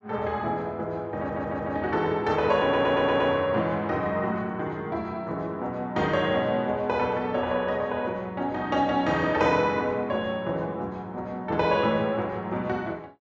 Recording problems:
treble cut off; nothing above 8 kHz
stutter; at 1 s and at 2.5 s

